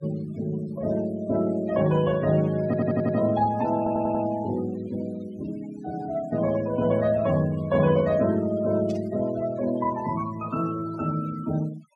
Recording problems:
noise reduction artefacts; signal-to-artefact ratio 19 dB
stutter; at 2.5 s and at 4 s
burst of static; at 9 s; peak -17 dB vs average level

